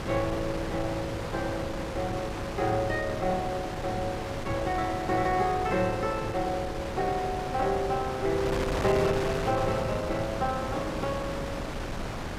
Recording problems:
wind noise; below 1.2 kHz, SNR 4 dB

